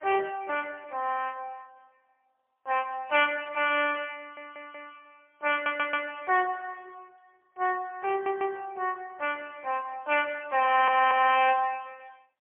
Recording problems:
phone line; 320 Hz to 3.3 kHz, AMR-NB, then MP3
stutter; 4 times, first at 4 s

